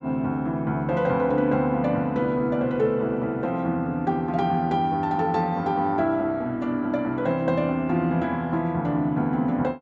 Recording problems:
none

